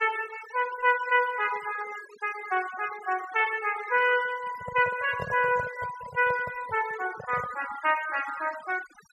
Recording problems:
noise reduction artefacts; signal-to-artefact ratio 14 dB
microphone handling noise; from 4.5 to 7.5 s; peak -4 dB vs average level

